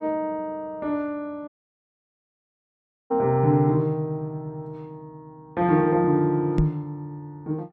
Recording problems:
dropout; at 1.5 s for 1.5 s
microphone bump; at 6.5 s; peak +8 dB vs average level

